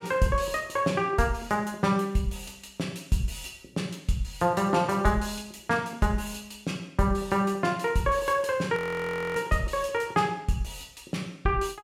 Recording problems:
audio freezing; at 9 s for 0.5 s

